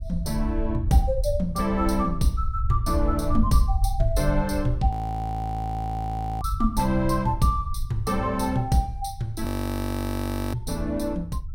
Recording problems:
low-frequency rumble; below 76 Hz, SNR 5 dB
frozen audio; at 5 s for 1.5 s and at 9.5 s for 1 s

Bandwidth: 16.5 kHz